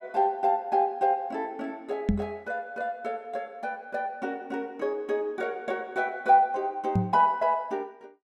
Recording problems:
microphone thump; at 2 s and at 7 s; peak +7 dB vs average level

